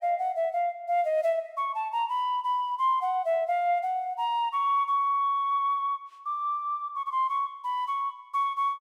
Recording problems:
none

